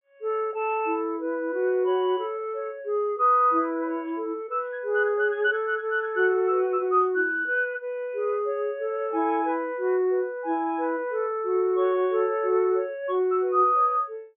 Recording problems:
treble missing; nothing above 3.5 kHz

